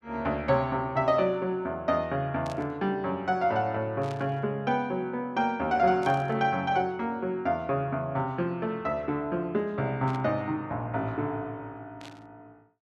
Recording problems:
burst of static; 5 times, first at 2.5 s; peak -12 dB vs average level

